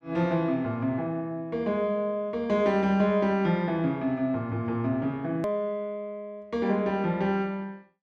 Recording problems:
click at an edit; at 5.5 s

